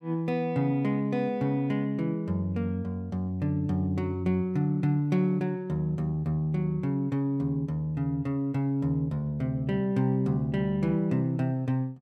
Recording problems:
none

